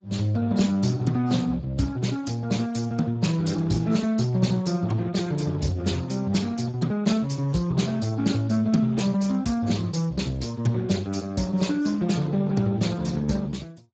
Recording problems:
lossy compression; AAC, then Speex, log-spectral distance 4 dB, nothing above 7.6 kHz

